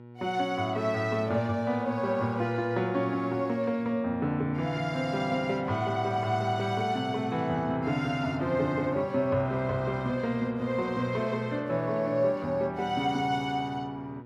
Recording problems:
hum; 60 Hz, harmonics up to 1.4 kHz, SNR 18 dB

